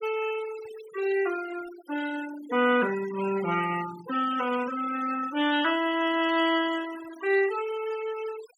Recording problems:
denoising artefacts; signal-to-artefact ratio 14 dB

